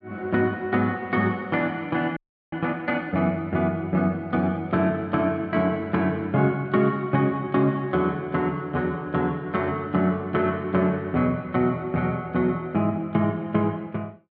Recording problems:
audio freezing; at 2 s

